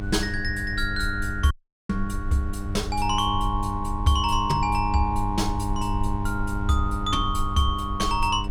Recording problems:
hum; 50 Hz, harmonics up to 1.2 kHz, SNR 7 dB
rumble; below 62 Hz, SNR 7 dB
dropout; at 1.5 s

